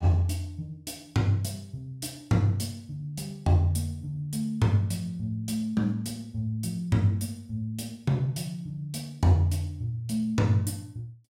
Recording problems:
none

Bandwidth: 16.5 kHz